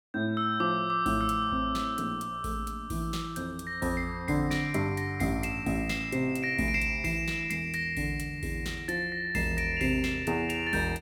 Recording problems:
none

